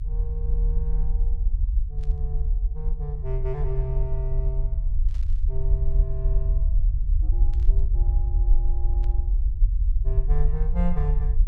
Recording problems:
rumble; below 50 Hz, SNR -10 dB
burst of static; 4 times, first at 2 s; peak -13 dB vs average level

